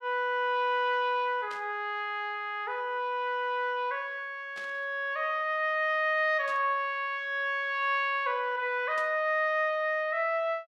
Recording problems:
burst of static; 4 times, first at 1.5 s; peak -13 dB vs average level

